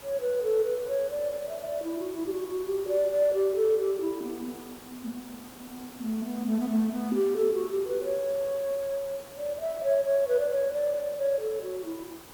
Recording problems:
hiss; slope -4 dB per octave, SNR 18 dB

